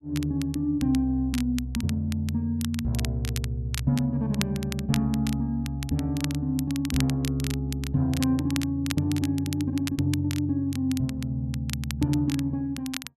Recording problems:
crackling; vinyl, SNR 12 dB

